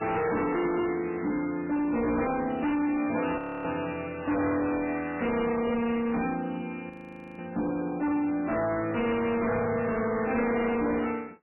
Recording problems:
lossy compression; MP3, log-spectral distance 4 dB, nothing above 2.4 kHz
distorted audio; hard clipping, signal-to-distortion ratio 6 dB
frozen audio; at 3.5 s and at 7 s

